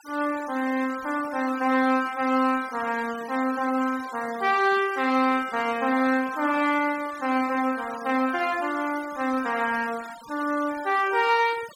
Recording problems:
noise reduction artefacts; signal-to-artefact ratio 18 dB

